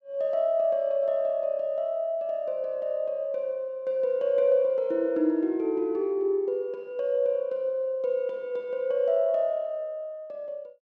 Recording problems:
none

